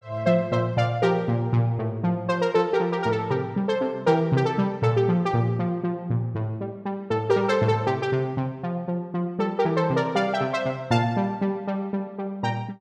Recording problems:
none

